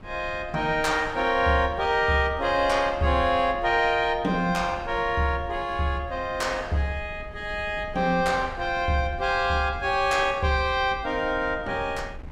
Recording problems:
wind on the microphone; below 160 Hz, SNR 17 dB

